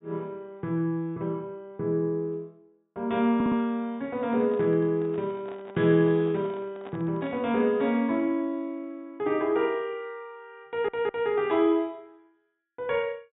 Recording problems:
treble cut off; nothing above 4 kHz
audio stuttering; at 3.5 s and at 11 s
handling noise; from 4 to 7.5 s; peak -12 dB vs average level

